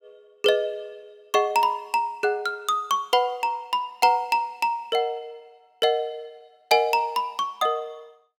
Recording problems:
none

